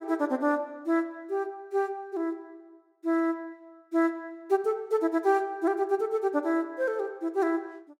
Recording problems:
none

